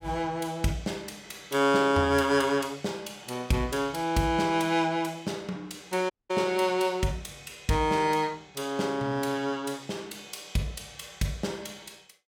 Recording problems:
dropout; at 6 s

